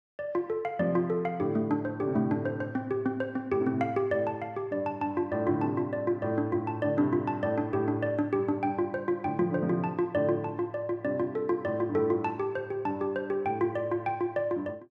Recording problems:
none

